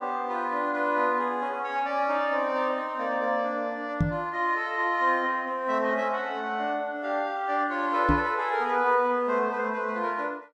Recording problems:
knock on the microphone; at 4 s and at 8 s; peak +6 dB vs average level

